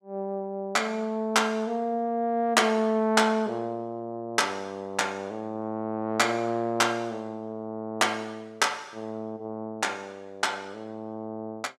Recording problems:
none

